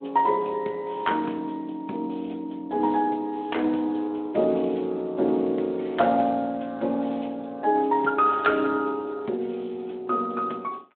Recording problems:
telephone audio; 280 Hz to 3.6 kHz, Speex

